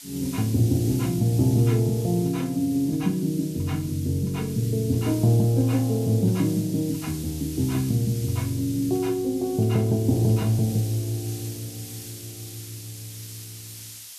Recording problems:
hiss; slope +5 dB per octave, SNR 15 dB

